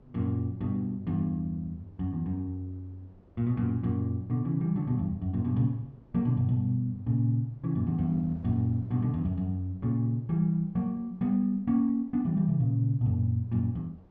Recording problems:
wind noise; below 380 Hz, SNR 28 dB

